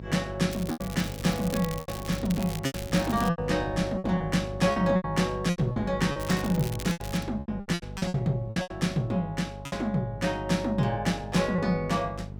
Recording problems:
mains hum; 50 Hz, harmonics up to 650 Hz, SNR 11 dB
wind noise; below 300 Hz, SNR 19 dB
lost packets; 11% of the sound replaced, filled with repeated pitch periods
crackling; from 0.5 to 3.5 s and from 6 to 7 s; loose cable, SNR 14 dB

